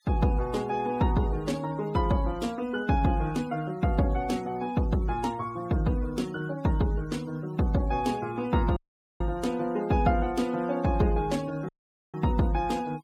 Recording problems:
noise reduction artefacts; signal-to-artefact ratio 22 dB
dropout; at 9 s and at 12 s

